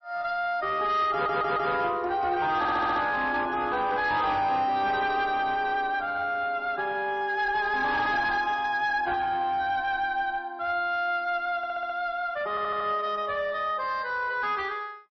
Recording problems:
lossy compression; MP3, log-spectral distance 2 dB, nothing above 5.7 kHz
distorted audio; soft clipping, signal-to-distortion ratio 11 dB
stutter; 4 times, first at 1 s

